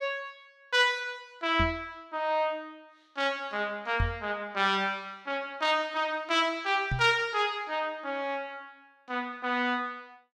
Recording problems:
microphone thump; at 1.5 s, at 4 s and at 7 s; peak +3 dB vs average level

